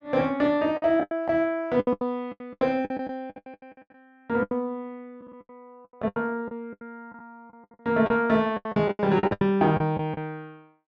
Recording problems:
lost packets; 18% of the sound replaced, filled with the last packet

